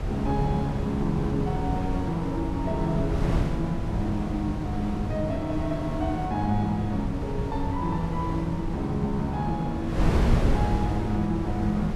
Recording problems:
wind noise; below 200 Hz, SNR 2 dB

